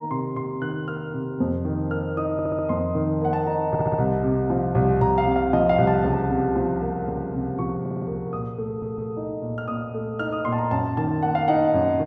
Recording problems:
audio stuttering; 4 times, first at 2.5 s

